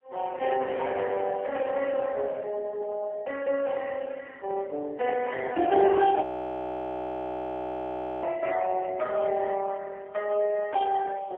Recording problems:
telephone audio; 280 Hz to 3.1 kHz, AMR-NB, then MP3
audio freezing; at 6 s for 2 s

